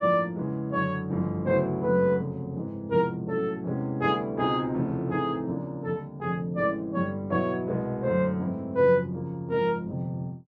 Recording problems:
none

